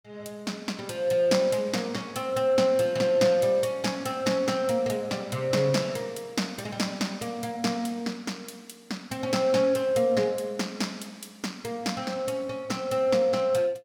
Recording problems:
none

